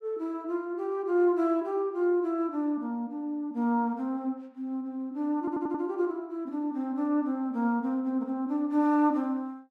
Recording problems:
stutter; at 5.5 s

